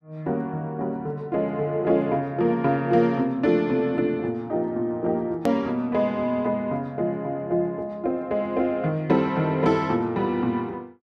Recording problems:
hard cut with a click; at 5.5 s

